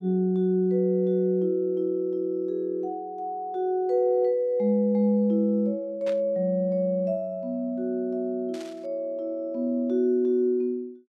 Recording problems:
static burst; at 6 s and at 8.5 s; peak -12 dB vs average level

